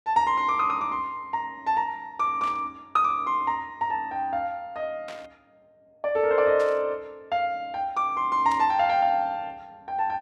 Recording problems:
burst of static; 4 times, first at 2.5 s; peak -12 dB vs average level

